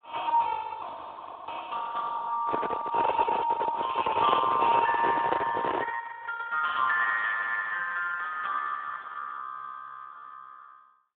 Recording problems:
phone line; 950 Hz to 2.5 kHz, Speex
microphone handling noise; from 2.5 to 6 s; peak +4 dB vs average level

